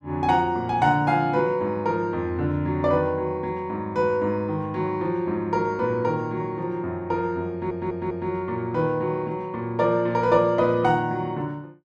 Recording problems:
audio stuttering; at 7.5 s

